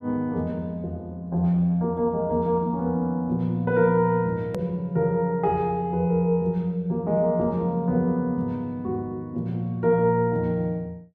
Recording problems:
click at an edit; at 4.5 s

